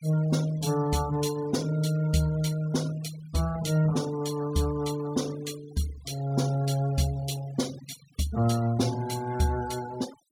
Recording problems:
noise reduction artefacts; signal-to-artefact ratio 18 dB

